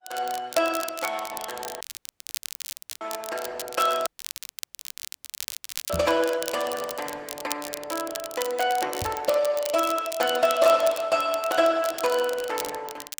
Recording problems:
lossy compression; Opus, log-spectral distance 4 dB, nothing above 19 kHz
crackle; vinyl, SNR 10 dB
audio cutting out; at 2 s for 1 s and at 4 s for 2 s
microphone bump; at 6 s and at 9 s; peak 0 dB vs average level

